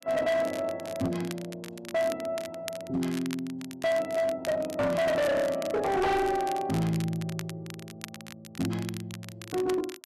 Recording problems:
distortion; hard clipping, signal-to-distortion ratio 7 dB
crackling; vinyl, SNR 15 dB

